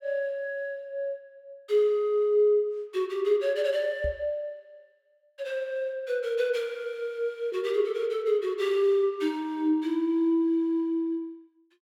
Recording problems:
microphone thump; at 4 s; peak -4 dB vs average level

